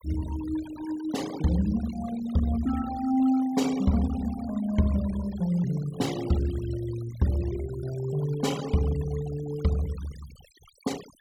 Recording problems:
denoising artefacts; signal-to-artefact ratio 17 dB

